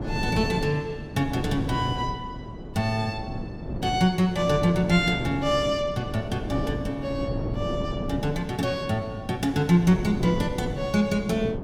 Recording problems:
wind on the microphone; below 330 Hz, SNR 8 dB

